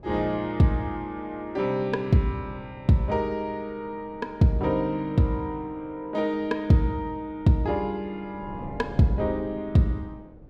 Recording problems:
wind noise; below 330 Hz, SNR 21 dB

